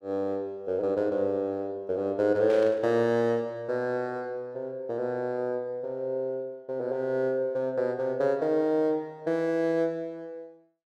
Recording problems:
burst of static; at 2.5 s; peak -11 dB vs average level

